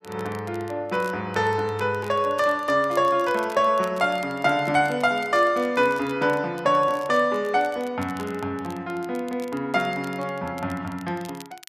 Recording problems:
crackling; vinyl, SNR 24 dB

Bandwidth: 14 kHz